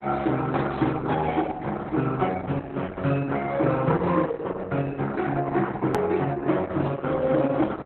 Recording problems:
lossy compression; Opus, then Opus, log-spectral distance 3 dB, nothing above 13.1 kHz
edit click; at 6 s

